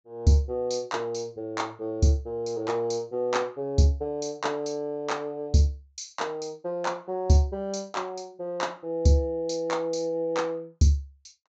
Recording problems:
treble missing; nothing above 8 kHz

